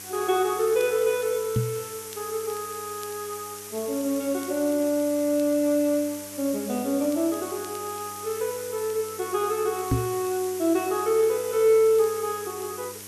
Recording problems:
hum; 50 Hz, harmonics up to 1.6 kHz, SNR 24 dB
background hiss; slope +2 dB per octave, SNR 12 dB
crackle; vinyl, SNR 28 dB
microphone bump; at 1.5 s and at 10 s; peak +5 dB vs average level

